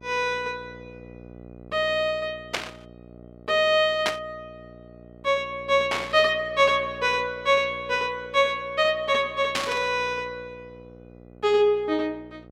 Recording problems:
hum; 60 Hz, harmonics up to 1.3 kHz, SNR 22 dB
burst of static; 4 times, first at 2.5 s; peak +2 dB vs average level

